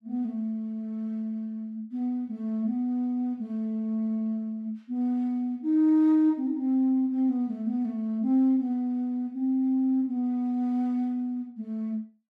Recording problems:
none

